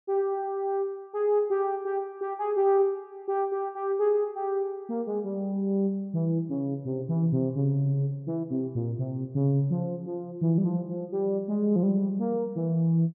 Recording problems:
none

